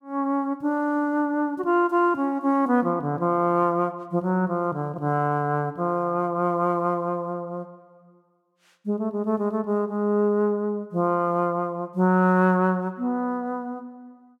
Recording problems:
none

